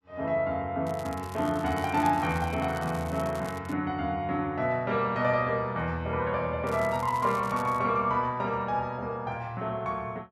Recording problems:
crackling; from 1 to 3.5 s and from 6.5 to 8 s; loose cable, SNR 20 dB

